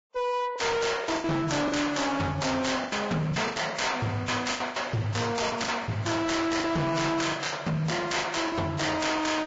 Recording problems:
codec artefacts; Vorbis, log-spectral distance 6 dB, nothing above 7.3 kHz
distorted audio; hard clipping, signal-to-distortion ratio 6 dB
packet loss; 10% of the sound replaced, filled with the last packet

